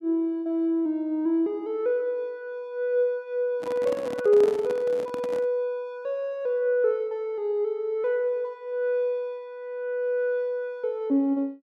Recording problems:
microphone handling noise; from 3.5 to 5.5 s; peak -5 dB vs average level

